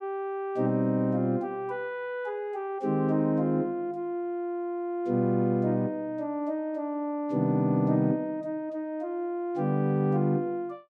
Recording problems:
none

